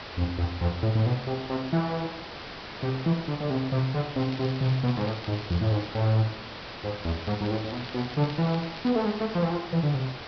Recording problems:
treble missing; nothing above 5.5 kHz
background hiss; SNR 11 dB
crackling; from 4 to 6 s and from 7 to 9.5 s; loose cable, SNR 17 dB

